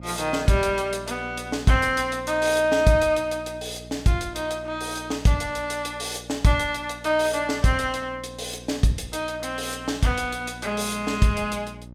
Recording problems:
hum; 60 Hz, harmonics up to 660 Hz, SNR 18 dB

